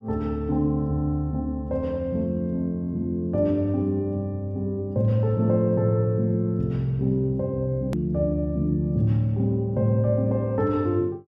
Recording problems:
edit click; at 8 s

